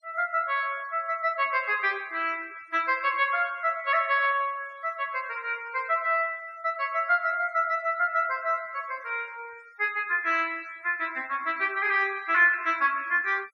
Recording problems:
denoising artefacts; signal-to-artefact ratio 26 dB

